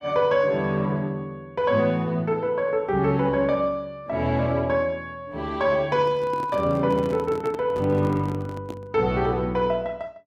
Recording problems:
microphone handling noise; from 6 to 9 s; peak -7 dB vs average level

